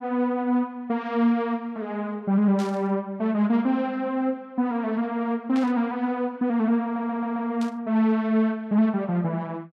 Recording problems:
burst of static; at 2.5 s, at 5.5 s and at 7.5 s; peak -11 dB vs average level
stutter; at 7 s

